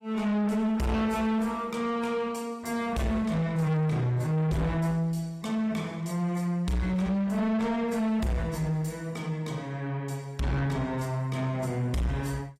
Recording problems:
lossy compression; AAC, log-spectral distance 2 dB, nothing above 14.7 kHz
distortion; soft clipping, signal-to-distortion ratio 8 dB

